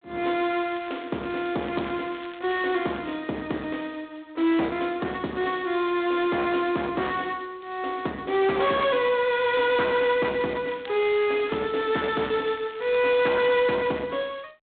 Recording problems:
phone line; 220 Hz to 3.8 kHz, G.726
distorted audio; hard clipping, signal-to-distortion ratio 11 dB
crackling; from 0.5 to 3 s and from 11 to 13 s; loose cable, SNR 22 dB

